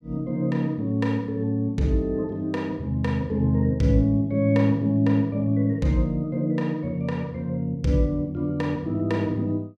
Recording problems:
none

